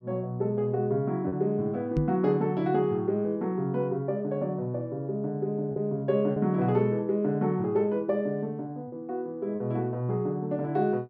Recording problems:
lost packets; 1.8% of the sound replaced, filled with repeated pitch periods
microphone thump; at 2 s; peak +5 dB vs average level

